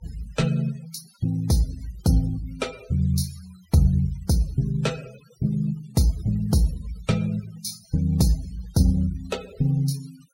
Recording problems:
denoising artefacts; signal-to-artefact ratio 20 dB

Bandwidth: 16 kHz